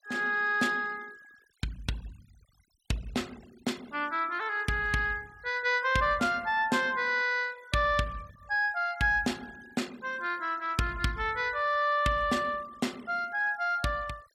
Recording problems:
denoising artefacts; signal-to-artefact ratio 24 dB

